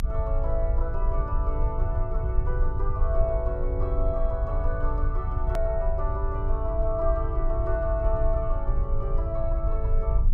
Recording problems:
mains hum; 60 Hz, harmonics up to 720 Hz, SNR 15 dB
rumble; below 58 Hz, strongest tone 24 Hz, SNR -3 dB
edit click; at 5.5 s

